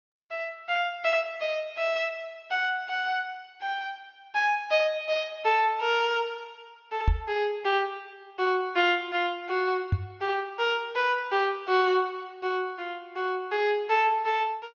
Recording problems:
treble cut off; nothing above 5.7 kHz
codec artefacts; Opus, log-spectral distance 2 dB
microphone thump; at 7 s and at 10 s; peak +6 dB vs average level

